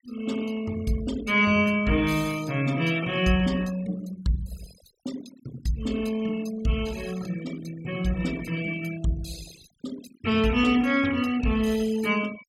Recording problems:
denoising artefacts; signal-to-artefact ratio 18 dB

